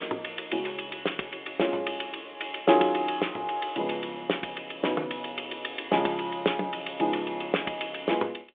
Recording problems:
phone line; 280 Hz to 3.6 kHz, G.726

